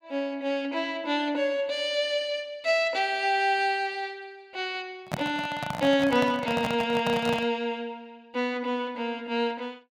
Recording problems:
handling noise; from 5 to 7.5 s; peak +1 dB vs average level

